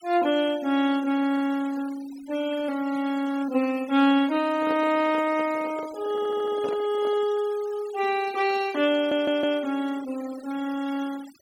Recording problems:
denoising artefacts; signal-to-artefact ratio 19 dB
microphone handling noise; from 4.5 to 7.5 s; peak -6 dB vs average level
audio stuttering; at 6 s and at 9 s

